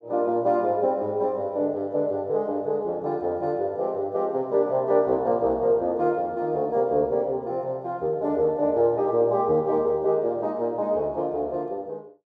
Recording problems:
none

